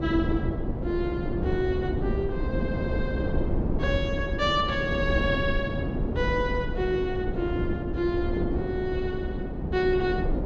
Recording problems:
wind on the microphone; below 300 Hz, SNR 1 dB

